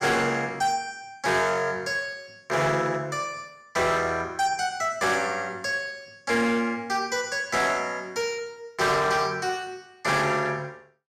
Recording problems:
distortion; hard clipping, uneven, signal-to-distortion ratio 12 dB

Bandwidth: 14.5 kHz